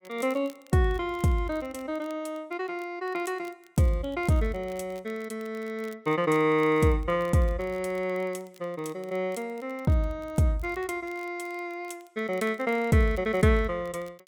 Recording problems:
crackling; vinyl, SNR 28 dB

